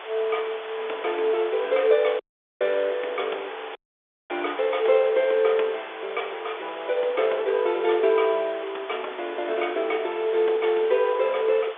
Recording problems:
telephone audio; 320 Hz to 3.6 kHz, G.711
hiss; SNR 13 dB
dropout; at 2 s and at 4 s for 0.5 s

